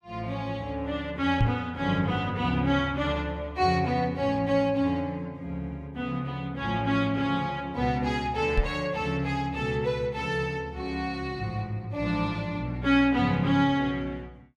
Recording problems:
microphone thump; at 1.5 s and at 8.5 s; peak +6 dB vs average level

